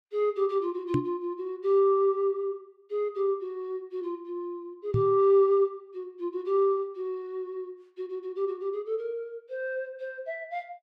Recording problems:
knock on the microphone; at 1 s and at 5 s; peak +5 dB vs average level

